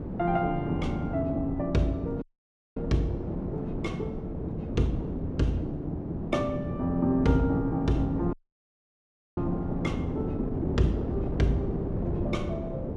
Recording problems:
wind noise; below 340 Hz, SNR 4 dB
dropout; at 2 s for 0.5 s and at 8.5 s for 1 s

